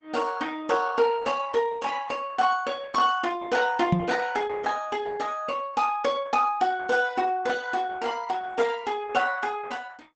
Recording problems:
lossy compression; Opus, log-spectral distance 4 dB, nothing above 7.8 kHz
knock on the microphone; at 4 s; peak +7 dB vs average level

